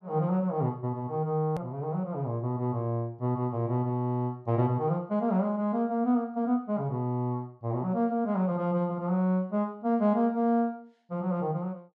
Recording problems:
edit click; at 1.5 s

